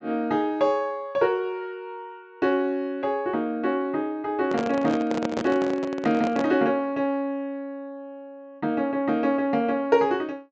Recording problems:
treble cut off; nothing above 8 kHz
microphone handling noise; from 4.5 to 6.5 s; peak 0 dB vs average level

